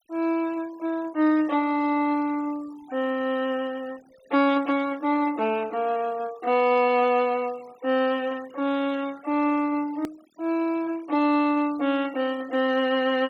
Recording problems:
noise reduction artefacts; signal-to-artefact ratio 24 dB
hard cut with a click; at 10 s

